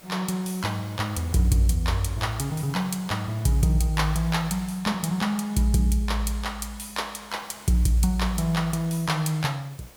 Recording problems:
background hiss; slope -4 dB per octave, SNR 24 dB

